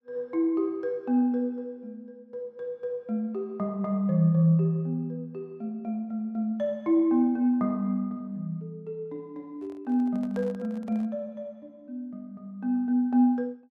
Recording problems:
handling noise; from 9.5 to 11 s; peak -12 dB vs average level

